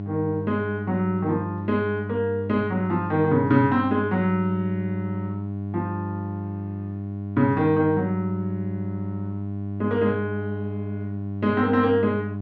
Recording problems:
electrical hum; 50 Hz, harmonics up to 700 Hz, SNR 7 dB

